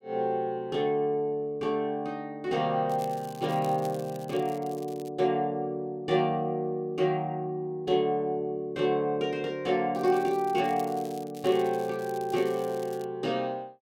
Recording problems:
crackle; from 3 to 5 s and from 10 to 13 s; loose cable, SNR 22 dB

